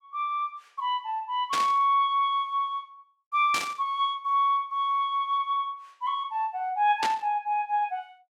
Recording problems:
burst of static; at 1.5 s, at 3.5 s and at 7 s; peak 0 dB vs average level

